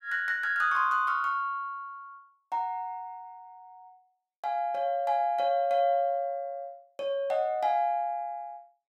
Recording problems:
none

